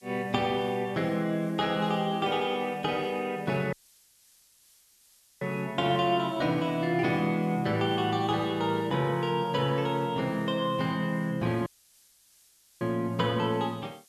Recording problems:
hiss; slope +4 dB per octave, SNR 30 dB
dropout; at 3.5 s for 1.5 s and at 12 s for 1 s

